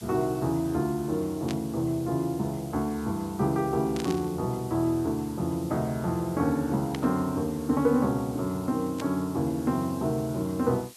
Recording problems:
background hiss; slope +2 dB per octave, SNR 20 dB
burst of static; 4 times, first at 1.5 s; peak -5 dB vs average level

